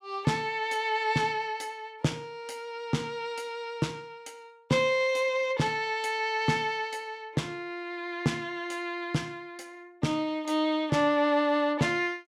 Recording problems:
none

